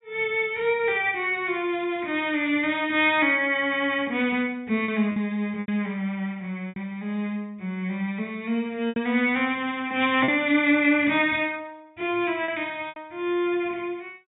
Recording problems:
treble missing; nothing above 4 kHz
lost packets; 3% of the sound replaced, filled with repeated pitch periods

